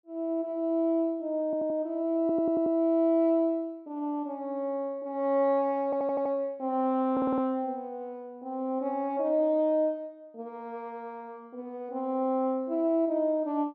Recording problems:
stutter; 4 times, first at 1.5 s

